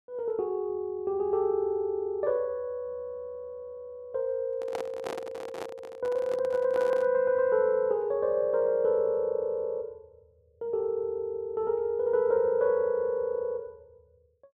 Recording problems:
microphone handling noise; from 4.5 to 7 s; peak -4 dB vs average level

